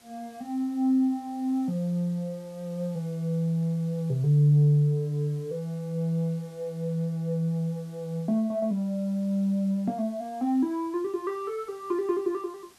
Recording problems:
background hiss; slope -1 dB per octave, SNR 28 dB

